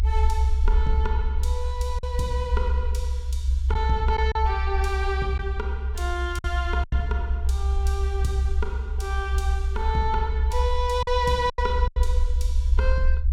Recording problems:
low-frequency rumble; below 68 Hz, strongest tone 66 Hz, SNR -3 dB
packet loss; 3% of the sound replaced, filled with silence

